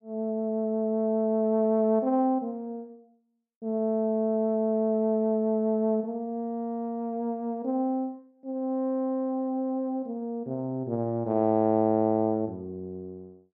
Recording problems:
none

